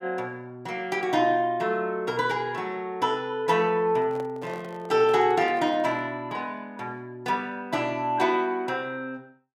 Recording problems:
handling noise; from 4 to 6 s; peak -11 dB vs average level

